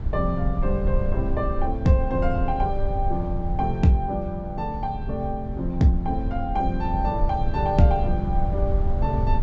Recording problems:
low-pass filter; nothing above 8 kHz
rumble; below 76 Hz, SNR 3 dB

